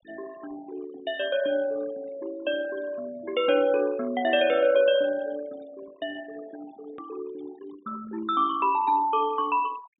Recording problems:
treble missing; nothing above 4 kHz
denoising artefacts; signal-to-artefact ratio 20 dB
edit click; at 7 s

